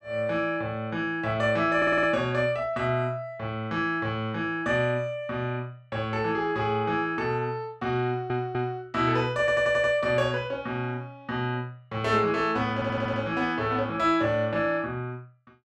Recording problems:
stutter; 4 times, first at 2 s

